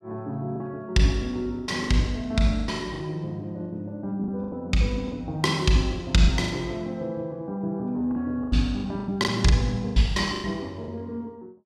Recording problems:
packet loss; 10% of the sound replaced, filled with the last packet

